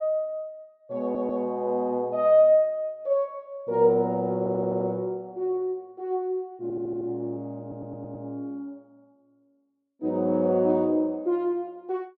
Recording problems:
audio stuttering; 4 times, first at 1 s

